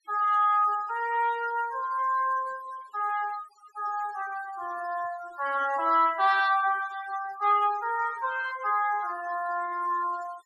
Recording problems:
noise reduction artefacts; signal-to-artefact ratio 19 dB

